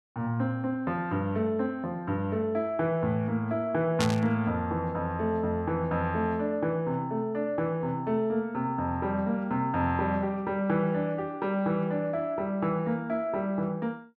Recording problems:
burst of static; at 4 s; peak +2 dB vs average level

